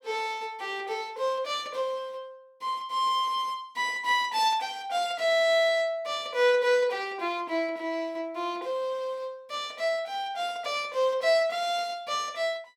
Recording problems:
none

